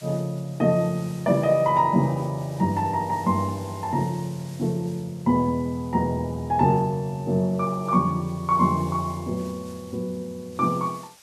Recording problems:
background hiss; slope +1 dB per octave, SNR 24 dB

